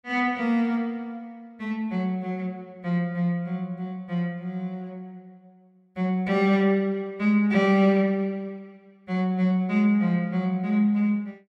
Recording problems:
none

